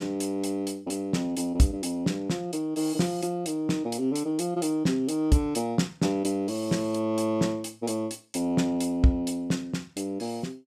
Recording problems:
none

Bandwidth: 14.5 kHz